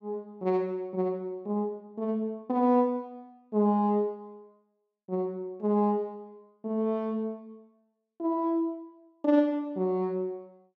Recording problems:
none

